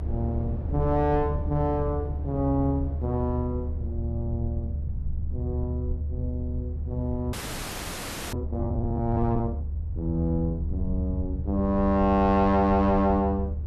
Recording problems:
low-frequency rumble; below 78 Hz, strongest tone 74 Hz, SNR 4 dB
wind noise; below 360 Hz, SNR 19 dB
audio freezing; at 7.5 s for 1 s

